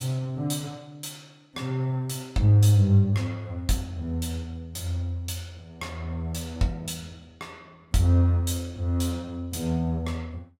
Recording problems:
none

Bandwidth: 16 kHz